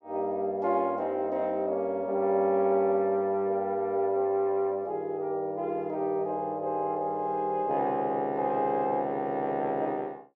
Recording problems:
none

